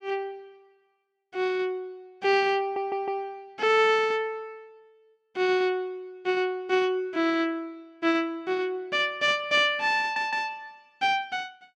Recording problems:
audio stuttering; at 2.5 s and at 10 s

